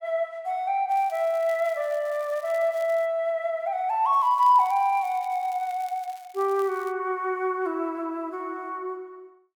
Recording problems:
crackling; from 1 to 3 s and from 4 to 7 s; loose cable, SNR 26 dB

